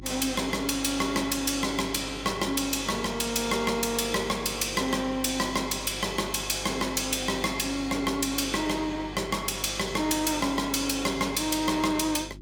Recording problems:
distorted audio; soft clipping, signal-to-distortion ratio 11 dB
hum; 50 Hz, harmonics up to 350 Hz, SNR 17 dB

